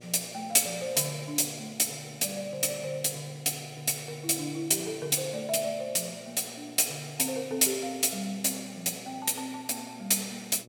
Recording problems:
hum; 60 Hz, harmonics up to 720 Hz, SNR 26 dB

